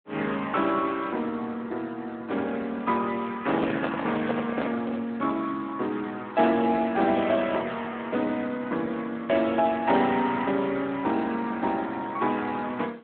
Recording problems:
phone line; 170 Hz to 3.7 kHz, Speex
microphone handling noise; from 3.5 to 5 s; peak 0 dB vs average level

